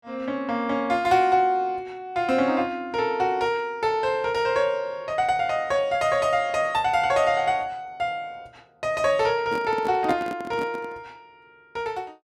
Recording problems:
microphone handling noise; from 9.5 to 11 s; peak -1 dB vs average level

